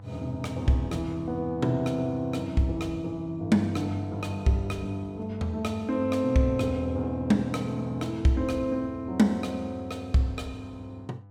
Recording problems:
hum; 50 Hz, harmonics up to 1 kHz, SNR 18 dB

